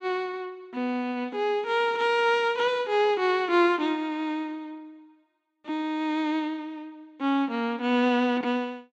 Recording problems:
none

